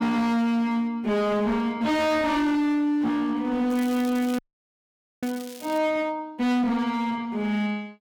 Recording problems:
distortion; hard clipping, signal-to-distortion ratio 8 dB
crackling; from 3.5 to 6 s; loose cable, SNR 18 dB
audio freezing; at 4.5 s for 1 s

